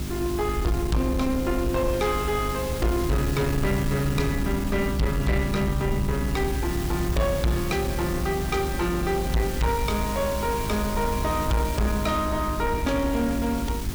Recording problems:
distortion; soft clipping, signal-to-distortion ratio 10 dB
hum; 50 Hz, harmonics up to 400 Hz, SNR 9 dB
background hiss; slope -2 dB per octave, SNR 11 dB
rumble; below 80 Hz, SNR 6 dB

